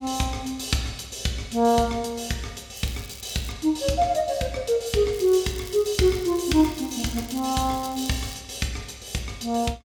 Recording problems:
crackling; at 3 s and from 5 to 8.5 s; loose cable, SNR 17 dB

